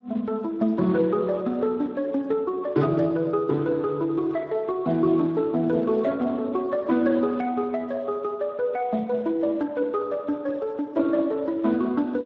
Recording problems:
codec artefacts; Speex, log-spectral distance 2 dB

